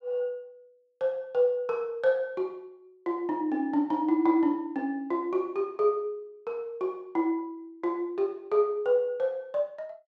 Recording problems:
none

